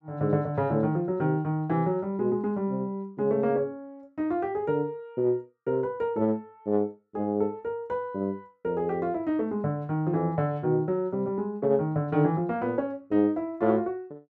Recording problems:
none

